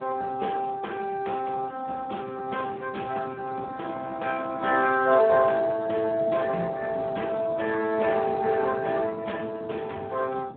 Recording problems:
phone line; 220 Hz to 2.9 kHz, Speex
wind on the microphone; below 390 Hz, SNR 16 dB

